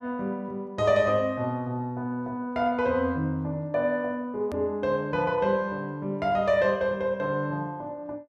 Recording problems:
hard cut with a click; at 4.5 s

